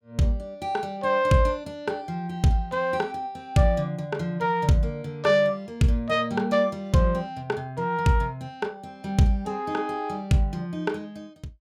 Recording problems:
none

